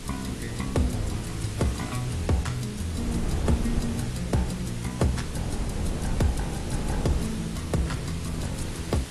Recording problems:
lossy compression; AAC, log-spectral distance 7 dB, nothing above 12 kHz
hum; 60 Hz, harmonics up to 480 Hz, SNR 15 dB
background hiss; slope 0 dB per octave, SNR 10 dB
wind noise; below 210 Hz, SNR 5 dB

